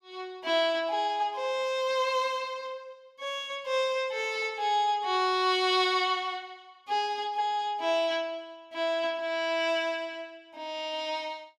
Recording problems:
none

